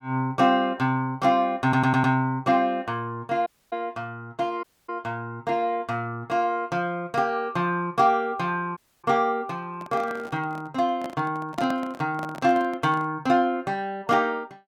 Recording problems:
audio stuttering; at 1.5 s
dropout; at 3.5 s, at 4.5 s and at 9 s
microphone handling noise; from 9.5 to 13 s; peak -5 dB vs average level

